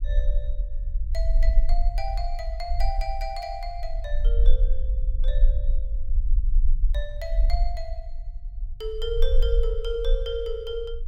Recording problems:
low-frequency rumble; below 42 Hz, strongest tone 22 Hz, SNR -6 dB

